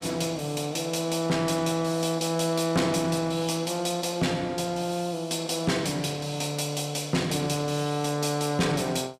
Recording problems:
distorted audio; soft clipping, signal-to-distortion ratio 11 dB

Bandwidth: 15 kHz